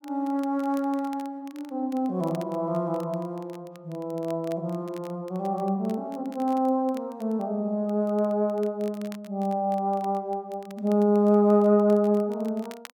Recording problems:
crackling; vinyl, SNR 27 dB

